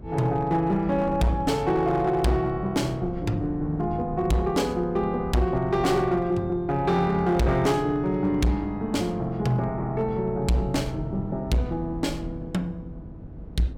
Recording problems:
distortion; hard clipping, signal-to-distortion ratio 11 dB
mains hum; 50 Hz, harmonics up to 300 Hz, SNR 19 dB
wind on the microphone; below 250 Hz, SNR 15 dB

